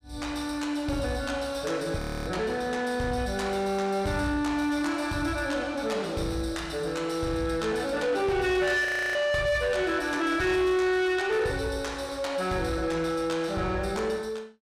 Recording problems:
distorted audio; soft clipping, signal-to-distortion ratio 11 dB
audio freezing; at 2 s and at 9 s

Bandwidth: 15.5 kHz